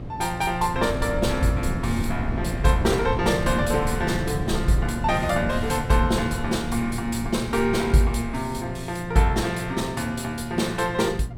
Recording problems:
hum; 60 Hz, harmonics up to 720 Hz, SNR 16 dB
wind on the microphone; below 200 Hz, SNR 8 dB

